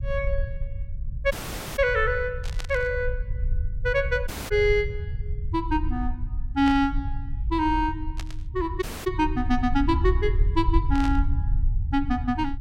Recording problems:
low-frequency rumble; below 74 Hz, SNR 4 dB
audio cutting out; at 1.5 s, at 4.5 s and at 9 s
burst of static; 4 times, first at 2.5 s; peak -6 dB vs average level

